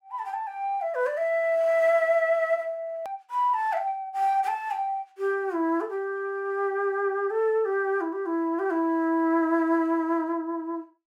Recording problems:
edit click; at 3 s

